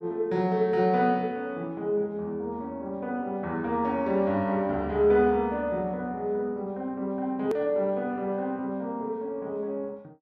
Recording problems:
click at an edit; at 7.5 s

